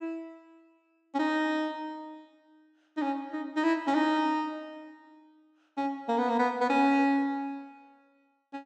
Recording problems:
none

